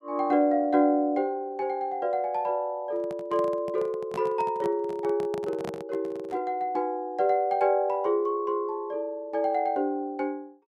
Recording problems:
microphone handling noise; from 3 to 6.5 s; peak -6 dB vs average level

